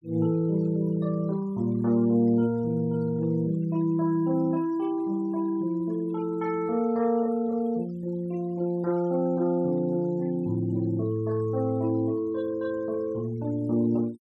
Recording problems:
denoising artefacts; signal-to-artefact ratio 28 dB

